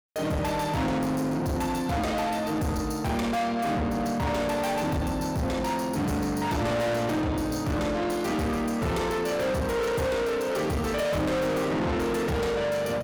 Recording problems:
distorted audio; soft clipping, signal-to-distortion ratio 6 dB

